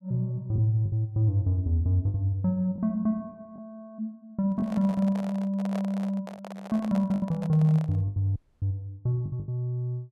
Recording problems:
lost packets; 5% of the sound replaced, filled with the last packet
handling noise; from 4.5 to 8 s; peak -6 dB vs average level
dropout; at 8.5 s

